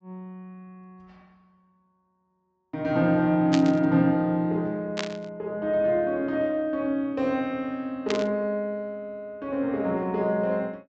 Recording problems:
low-pass filter; nothing above 8 kHz
burst of static; at 3.5 s, at 5 s and at 8 s; peak 0 dB vs average level

